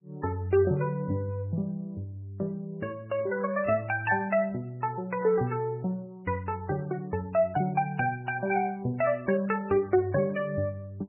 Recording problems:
lossy codec; MP3, log-spectral distance 2 dB, nothing above 2.7 kHz

